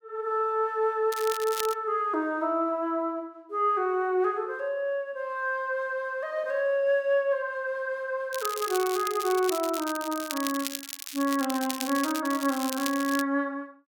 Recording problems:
crackling; at 1 s and from 8.5 to 13 s; loose cable, SNR 8 dB

